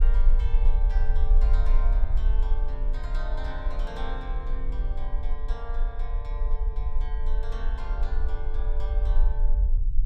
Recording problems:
rumble; below 40 Hz, strongest tone 22 Hz, SNR -13 dB

